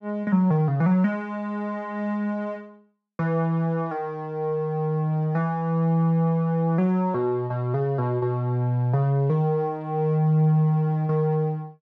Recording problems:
none

